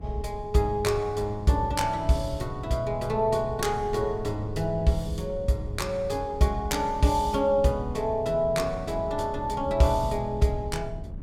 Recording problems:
wind noise; below 120 Hz, SNR 14 dB

